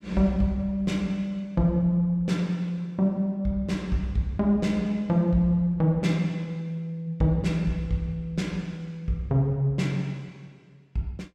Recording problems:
none

